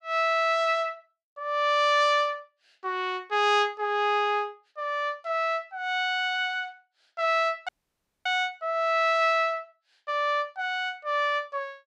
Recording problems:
audio cutting out; at 7.5 s for 0.5 s

